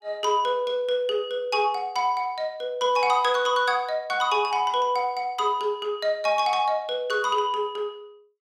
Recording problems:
none

